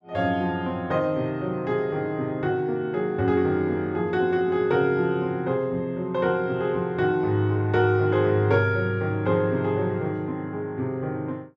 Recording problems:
none

